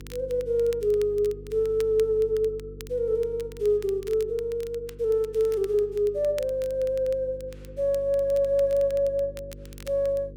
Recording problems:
hum; 50 Hz, harmonics up to 500 Hz, SNR 19 dB
crackle; vinyl, SNR 24 dB

